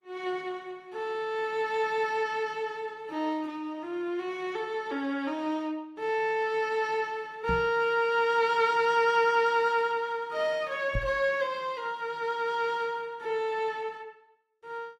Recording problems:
lossy codec; Opus, log-spectral distance 2 dB
microphone thump; at 7.5 s and at 11 s; peak +1 dB vs average level

